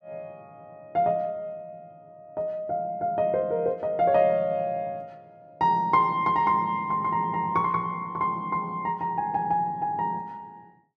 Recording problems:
none

